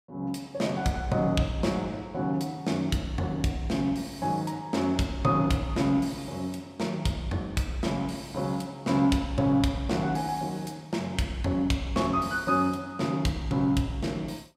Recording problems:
none

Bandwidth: 15.5 kHz